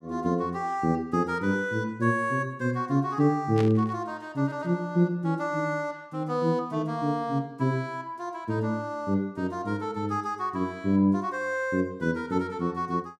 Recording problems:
burst of static; at 3.5 s; peak -6 dB vs average level

